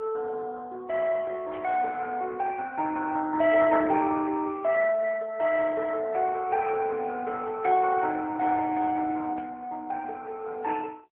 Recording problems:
telephone audio; 320 Hz to 2.2 kHz, AMR-NB
static burst; at 1.5 s, at 5.5 s and at 9.5 s; peak -17 dB vs average level

